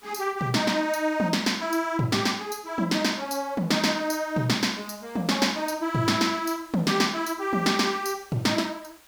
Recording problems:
hiss; slope -1 dB per octave, SNR 27 dB

